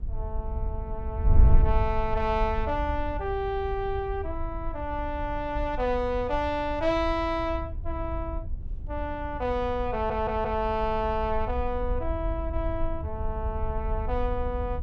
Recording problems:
wind noise; below 70 Hz, SNR 3 dB
audio stuttering; at 10 s

